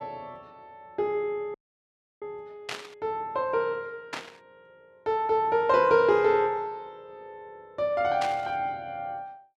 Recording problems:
dropout; at 1.5 s for 0.5 s
static burst; at 2.5 s, at 4 s and at 8 s; peak -3 dB vs average level

